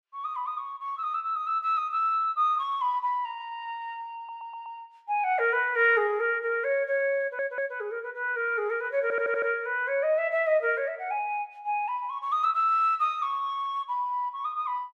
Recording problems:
audio stuttering; at 4 s, at 7 s and at 9 s

